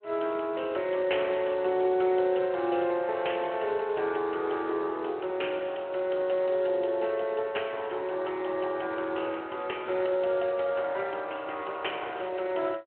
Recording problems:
telephone audio; 320 Hz to 3.2 kHz, Speex

